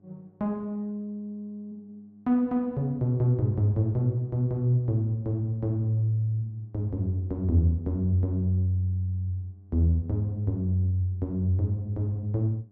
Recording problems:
hum; 50 Hz, harmonics up to 800 Hz, SNR 32 dB

